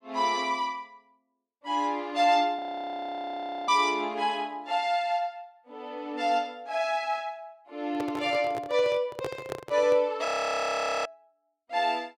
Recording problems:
audio freezing; at 2.5 s for 1 s and at 10 s for 1 s
handling noise; from 8 to 10 s; peak -2 dB vs average level

